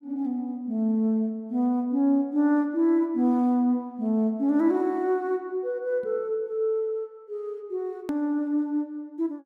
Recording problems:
click at an edit; at 8 s

